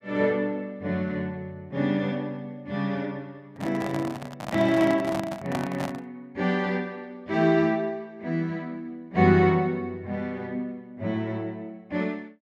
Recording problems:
microphone handling noise; from 3.5 to 6 s; peak 0 dB vs average level

